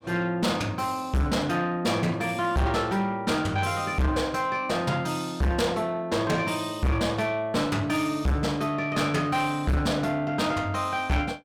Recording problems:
distortion; soft clipping, signal-to-distortion ratio 6 dB

